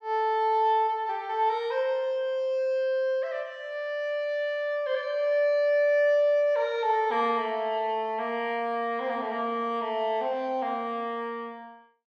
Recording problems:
none

